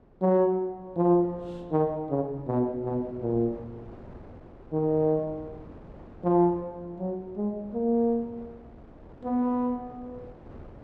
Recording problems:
wind on the microphone; below 520 Hz, SNR 21 dB

